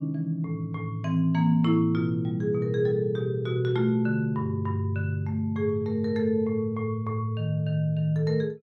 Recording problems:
none

